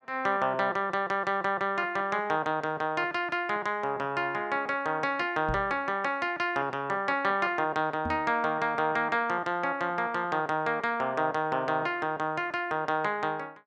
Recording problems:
microphone thump; at 5.5 s and at 8 s; peak -3 dB vs average level

